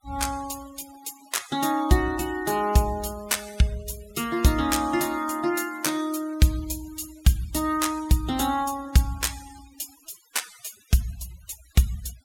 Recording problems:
denoising artefacts; signal-to-artefact ratio 20 dB

